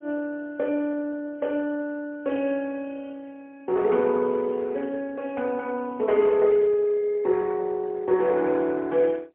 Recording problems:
phone line; 300 Hz to 3.6 kHz, AMR-NB, then MP3

